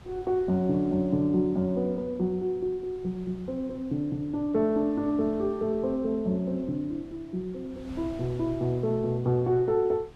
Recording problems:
wind noise; below 320 Hz, SNR 21 dB

